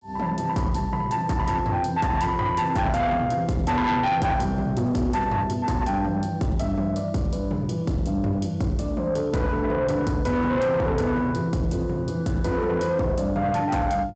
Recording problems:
low-pass filter; nothing above 8 kHz
distortion; soft clipping, signal-to-distortion ratio 10 dB

